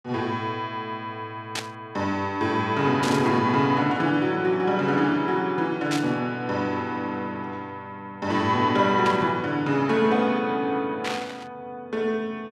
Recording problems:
burst of static; 5 times, first at 1.5 s; peak -1 dB vs average level

